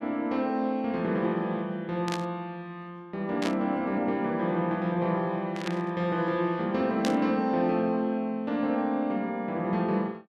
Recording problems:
burst of static; 4 times, first at 2 s; peak -1 dB vs average level

